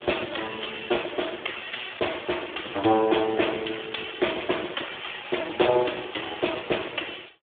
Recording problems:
phone line; 260 Hz to 3.6 kHz, Speex

